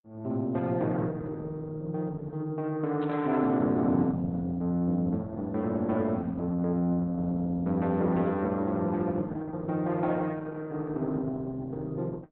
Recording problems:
codec artefacts; Opus, log-spectral distance 2 dB, nothing above 3.9 kHz
burst of static; at 3 s; peak -15 dB vs average level

